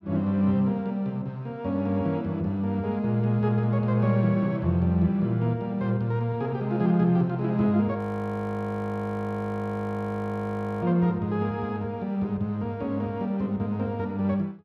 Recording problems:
frozen audio; at 8 s for 3 s

